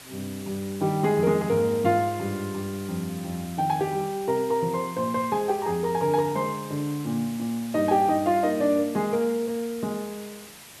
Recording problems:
hiss; slope -1 dB per octave, SNR 17 dB

